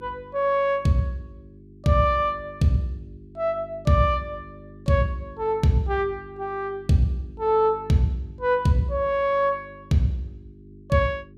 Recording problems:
hum; 50 Hz, harmonics up to 400 Hz, SNR 22 dB

